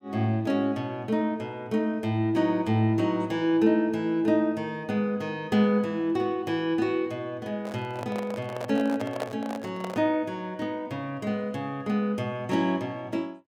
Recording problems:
microphone handling noise; from 7.5 to 10 s; peak -1 dB vs average level

